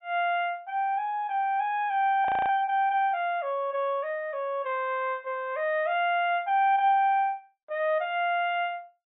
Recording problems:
low-pass filter; nothing above 4 kHz
frozen audio; at 2.5 s

